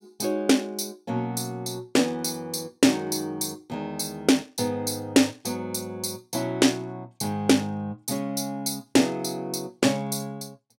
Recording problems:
none

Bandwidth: 16 kHz